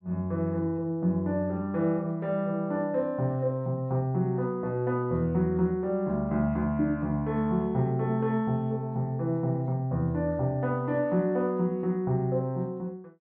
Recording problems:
none

